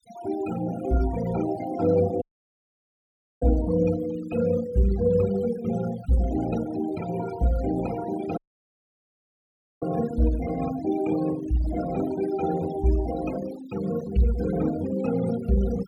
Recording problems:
denoising artefacts; signal-to-artefact ratio 15 dB
audio cutting out; at 2 s for 1 s and at 8.5 s for 1.5 s

